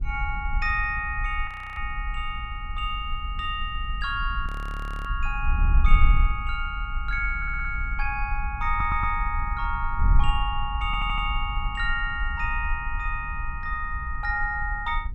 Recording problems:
wind noise; below 56 Hz, SNR 2 dB
frozen audio; at 1.5 s and at 4.5 s for 0.5 s
audio stuttering; at 7.5 s, at 8.5 s and at 11 s

